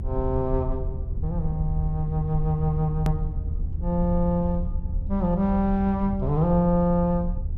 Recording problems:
low-frequency rumble; below 78 Hz, SNR 6 dB
edit click; at 3 s

